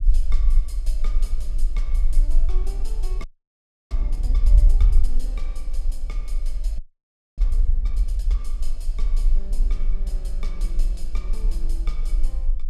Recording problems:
rumble; below 40 Hz, strongest tone 22 Hz, SNR -18 dB
audio freezing; at 3 s for 0.5 s and at 7 s for 0.5 s

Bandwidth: 14.5 kHz